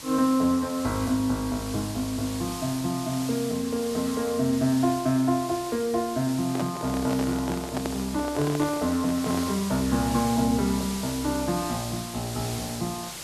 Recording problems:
hiss; slope 0 dB per octave, SNR 10 dB
handling noise; from 6.5 to 9.5 s; peak -1 dB vs average level

